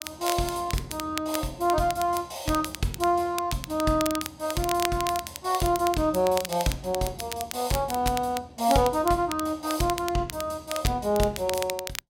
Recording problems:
crackling; vinyl, SNR 10 dB

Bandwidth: 16 kHz